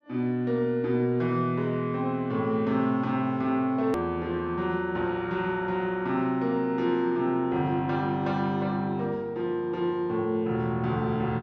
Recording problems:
edit click; at 4 s

